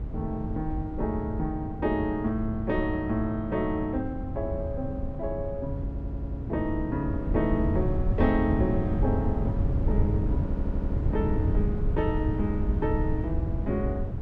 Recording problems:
electrical hum; 50 Hz, harmonics up to 550 Hz, SNR 18 dB
wind on the microphone; below 130 Hz, SNR 0 dB
stutter; at 6 s and at 10 s

